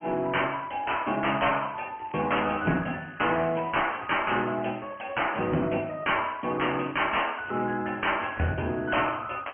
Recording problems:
low-pass filter; nothing above 3.1 kHz
codec artefacts; AAC, log-spectral distance 6 dB
distortion; hard clipping, uneven, signal-to-distortion ratio 10 dB
crackling; from 2 to 5.5 s and at 7 s; loose cable, SNR 27 dB

